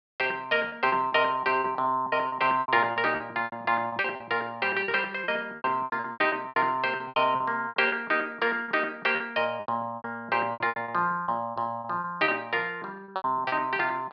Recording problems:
treble missing; nothing above 5.5 kHz
packet loss; 15% of the sound replaced, filled with repeated pitch periods

